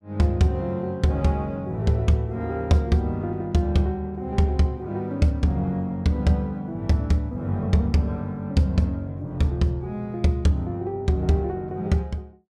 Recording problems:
none

